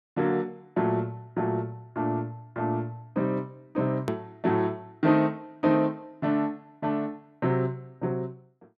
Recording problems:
edit click; at 4 s

